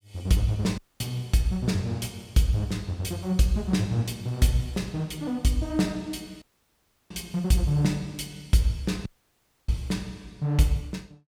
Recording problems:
dropout; at 1 s, at 6.5 s for 0.5 s and at 9 s for 0.5 s

